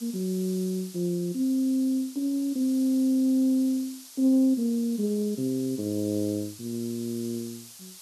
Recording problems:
hiss; SNR 17 dB

